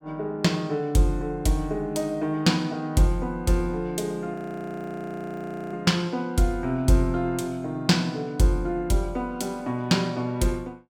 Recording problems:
frozen audio; at 4.5 s for 1.5 s

